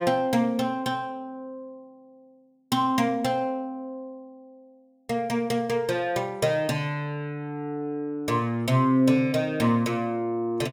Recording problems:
none

